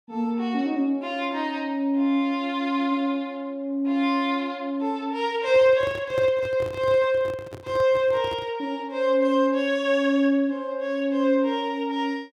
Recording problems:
microphone handling noise; from 5.5 to 8.5 s; peak -7 dB vs average level

